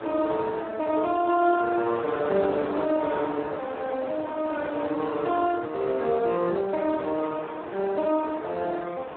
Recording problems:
phone line; 260 Hz to 2.2 kHz, Speex
wind on the microphone; below 1.3 kHz, SNR 11 dB

